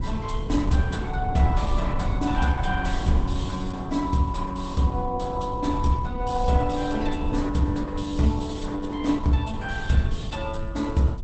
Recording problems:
lossy compression; Opus, log-spectral distance 3 dB, nothing above 8.2 kHz
rumble; below 96 Hz, SNR 6 dB

